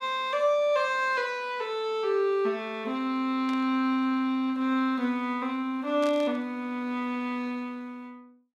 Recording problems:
static burst; at 3.5 s and at 6 s; peak -10 dB vs average level

